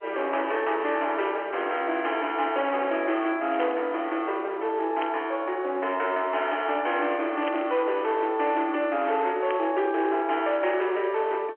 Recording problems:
phone line; 280 Hz to 3.5 kHz, G.711
distortion; hard clipping, signal-to-distortion ratio 12 dB
static burst; 4 times, first at 3.5 s; peak -4 dB vs average level

